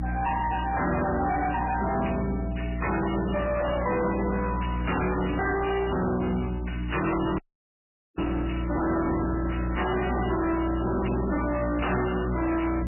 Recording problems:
lossy compression; MP3, log-spectral distance 8 dB, nothing above 2.9 kHz
distorted audio; hard clipping, signal-to-distortion ratio 7 dB
electrical hum; 60 Hz, harmonics up to 300 Hz, SNR 4 dB
audio cutting out; at 7.5 s for 1 s

